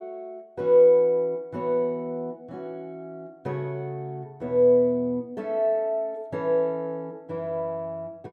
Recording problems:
none

